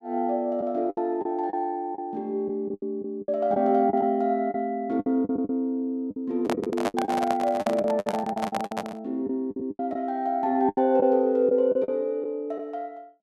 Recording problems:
lost packets; 12% of the sound replaced, filled with the last packet
microphone handling noise; from 6.5 to 9 s; peak +2 dB vs average level

